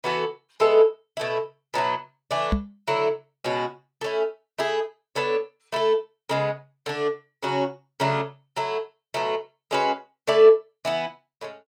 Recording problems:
microphone bump; at 2.5 s; peak +5 dB vs average level

